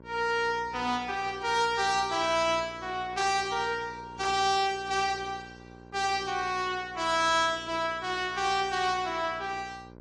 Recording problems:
codec artefacts; MP3, then AAC, log-spectral distance 2 dB, nothing above 10.1 kHz
mains hum; 60 Hz, harmonics up to 1.6 kHz, SNR 21 dB

